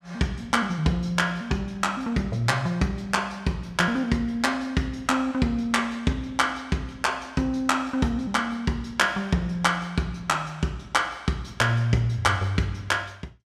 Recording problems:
none

